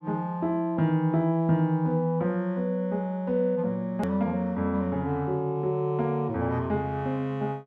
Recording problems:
edit click; at 4 s

